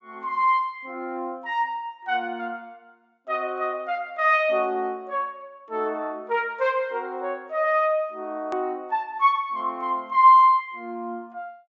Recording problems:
low-pass filter; nothing above 8 kHz
edit click; at 8.5 s

